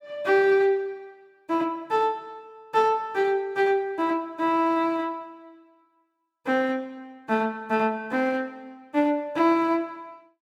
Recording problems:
none

